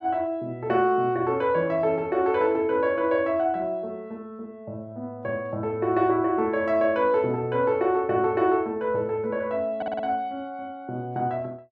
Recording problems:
stutter; at 10 s

